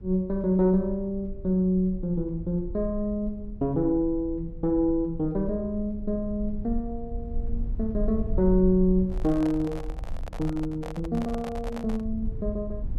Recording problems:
low-frequency rumble; below 54 Hz, SNR 11 dB
microphone handling noise; from 9 to 12 s; peak -8 dB vs average level

